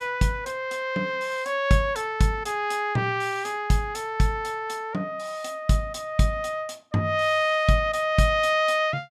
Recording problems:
none

